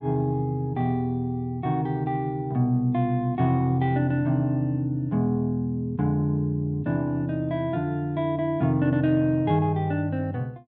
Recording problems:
none

